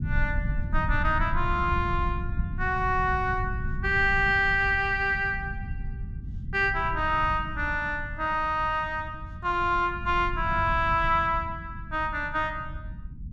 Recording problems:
rumble; below 110 Hz, SNR 9 dB

